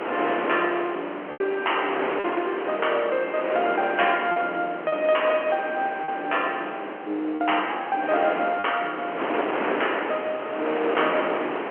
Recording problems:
telephone audio; 260 Hz to 3.1 kHz, G.711
wind noise; below 1.5 kHz, SNR 4 dB
packet loss; 3% of the sound replaced, filled with repeated pitch periods

